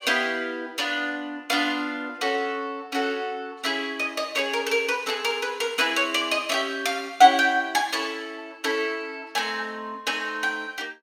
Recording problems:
none

